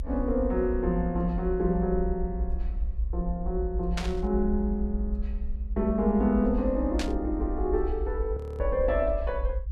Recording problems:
rumble; below 60 Hz, SNR 5 dB
static burst; at 4 s and at 7 s; peak -1 dB vs average level
frozen audio; at 8.5 s

